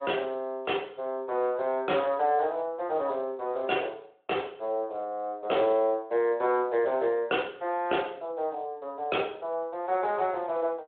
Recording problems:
phone line; 260 Hz to 3.5 kHz, Speex

